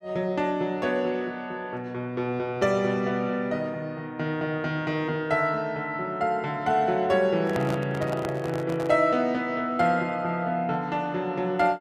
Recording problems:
handling noise; from 7.5 to 9 s; peak -3 dB vs average level

